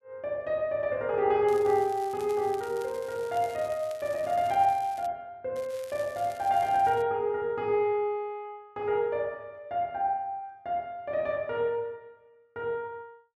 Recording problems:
crackle; from 1.5 to 5 s and from 5.5 to 7 s; loose cable, SNR 22 dB

